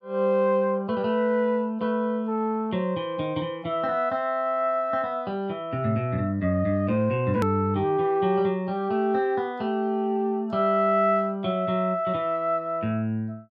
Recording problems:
click at an edit; at 7.5 s

